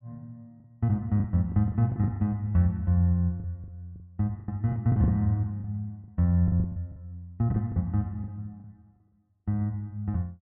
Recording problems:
packet loss; 10% of the sound replaced, filled with the last packet

